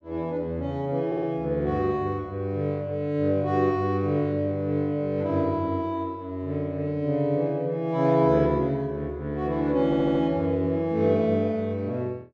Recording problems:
stutter; at 1 s and at 10 s

